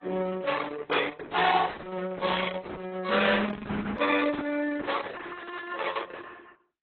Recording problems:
lossy codec; Opus, then AAC, log-spectral distance 7 dB, nothing above 3.9 kHz

